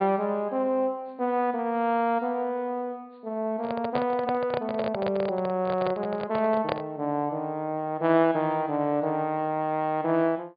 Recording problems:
low-pass filter; nothing above 4.8 kHz
handling noise; from 3.5 to 7 s; peak +2 dB vs average level

